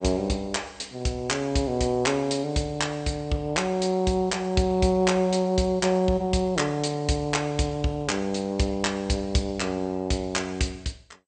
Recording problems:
codec artefacts; MP2, log-spectral distance 4 dB, nothing above 8.5 kHz

